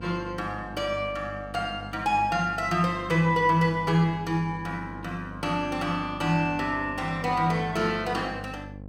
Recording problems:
hum; 50 Hz, harmonics up to 850 Hz, SNR 15 dB

